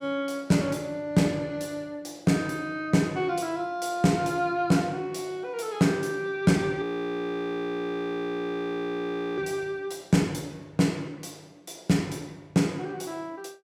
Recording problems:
frozen audio; at 7 s for 2.5 s

